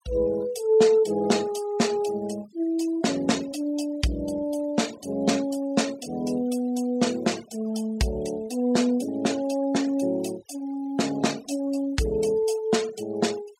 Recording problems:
noise reduction artefacts; signal-to-artefact ratio 18 dB

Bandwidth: 16 kHz